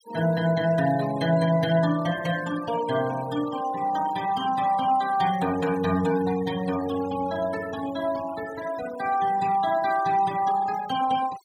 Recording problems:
denoising artefacts; signal-to-artefact ratio 15 dB

